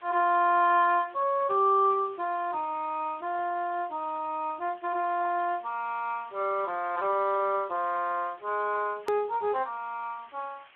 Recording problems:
telephone audio; 280 Hz to 3.8 kHz, Speex
background hiss; SNR 27 dB
hard cut with a click; at 9 s

